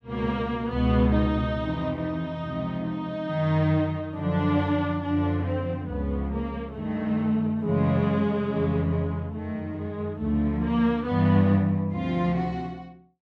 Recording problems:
none

